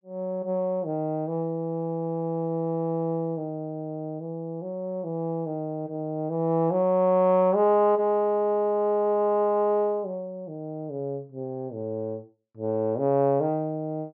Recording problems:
treble cut off; nothing above 8 kHz

